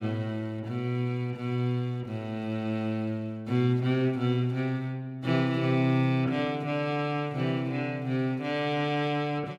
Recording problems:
none

